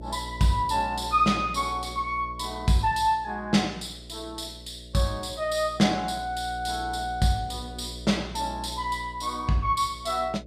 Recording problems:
hum; 60 Hz, harmonics up to 660 Hz, SNR 15 dB

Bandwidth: 15 kHz